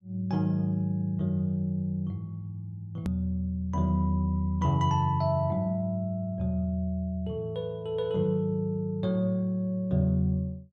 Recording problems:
hard cut with a click; at 3 s

